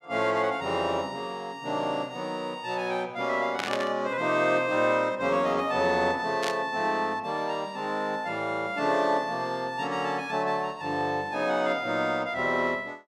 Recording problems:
burst of static; at 3.5 s and at 6.5 s; peak 0 dB vs average level

